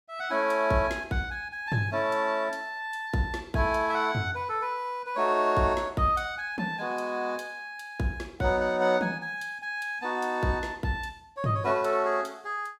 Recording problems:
none

